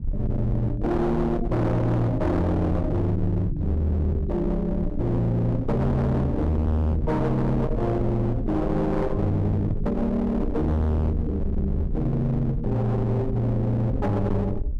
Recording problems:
distorted audio; hard clipping, uneven, signal-to-distortion ratio 6 dB
low-frequency rumble; below 110 Hz, SNR 7 dB

